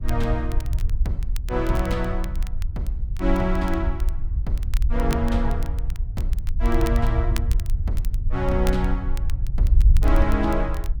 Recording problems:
rumble; below 60 Hz, SNR -2 dB
crackling; vinyl, SNR 16 dB

